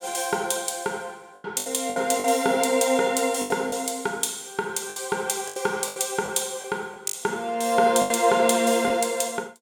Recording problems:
lost packets; 8% of the sound replaced, filled with the last packet

